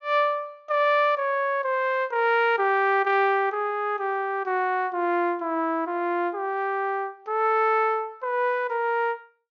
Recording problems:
treble missing; nothing above 7.1 kHz

